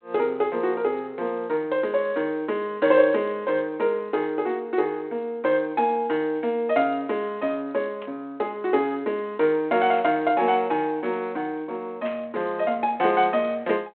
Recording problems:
phone line; 260 Hz to 3.7 kHz, G.726
static burst; at 8 s, at 10 s and at 12 s; peak -11 dB vs average level

